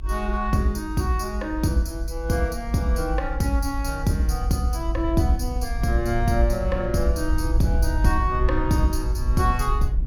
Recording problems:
low-frequency rumble; below 56 Hz, SNR 3 dB

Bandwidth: 18 kHz